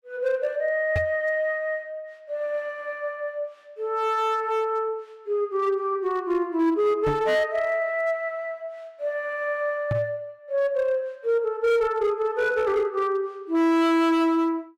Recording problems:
distortion; hard clipping, signal-to-distortion ratio 11 dB
microphone thump; at 1 s, at 7 s and at 10 s; peak +1 dB vs average level

